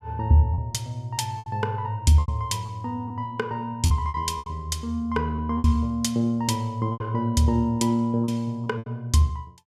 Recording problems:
packet loss; 8% of the sound replaced, filled with repeated pitch periods

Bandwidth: 15.5 kHz